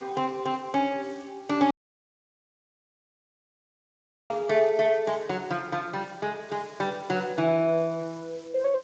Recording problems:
codec artefacts; Speex, log-spectral distance 5 dB
background hiss; slope -1 dB per octave, SNR 27 dB
dropout; at 1.5 s for 2.5 s

